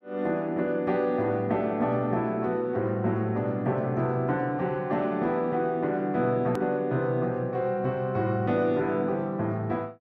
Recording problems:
click at an edit; at 6.5 s

